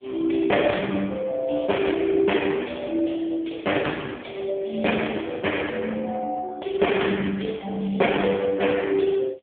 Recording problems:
telephone audio; 190 Hz to 3.4 kHz, AMR-NB

